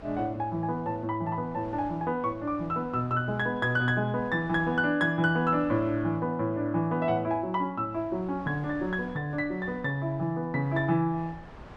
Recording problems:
wind noise; below 920 Hz, SNR 22 dB

